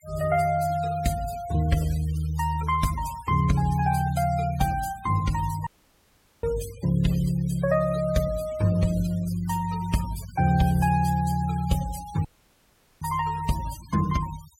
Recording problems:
noise reduction artefacts; signal-to-artefact ratio 16 dB
dropout; at 5.5 s for 1 s and at 12 s for 1 s

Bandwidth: 16.5 kHz